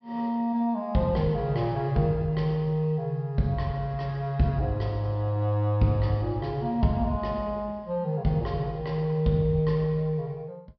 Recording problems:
treble missing; nothing above 5.5 kHz

